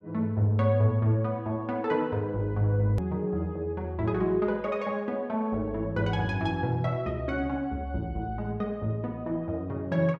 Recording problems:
edit click; at 3 s

